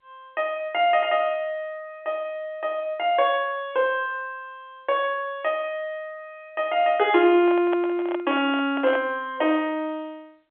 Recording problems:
telephone audio; 300 Hz to 3.5 kHz, G.711
handling noise; from 7.5 to 9 s; peak -2 dB vs average level

